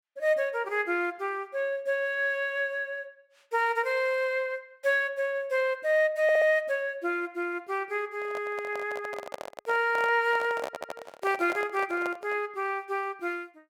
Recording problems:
audio stuttering; at 6 s and at 11 s
microphone handling noise; from 8 to 12 s; peak -2 dB vs average level

